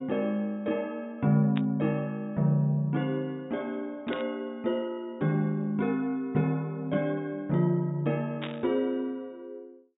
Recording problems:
treble cut off; nothing above 4 kHz
burst of static; at 1.5 s, at 4 s and at 8.5 s; peak -4 dB vs average level

